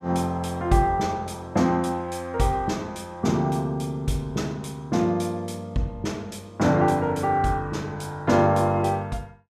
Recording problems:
none

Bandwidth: 14.5 kHz